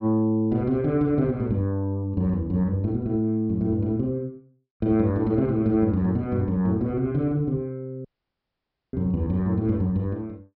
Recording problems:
treble cut off; nothing above 5.5 kHz
dropout; at 8 s for 1 s

